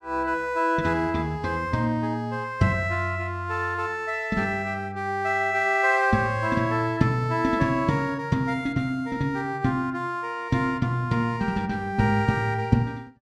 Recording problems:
none

